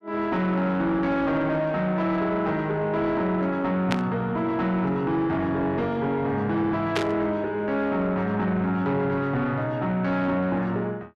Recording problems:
distortion; soft clipping, signal-to-distortion ratio 11 dB
burst of static; at 4 s and at 7 s; peak +2 dB vs average level

